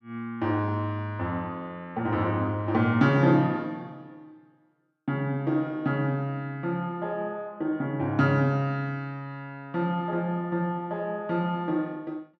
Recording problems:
none

